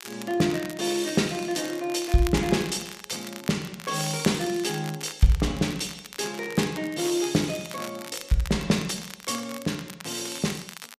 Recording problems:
crackle; vinyl, SNR 14 dB

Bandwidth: 14.5 kHz